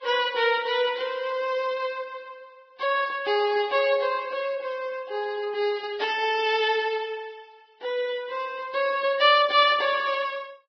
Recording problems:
codec artefacts; Vorbis, then Vorbis, log-spectral distance 3 dB, nothing above 5.3 kHz

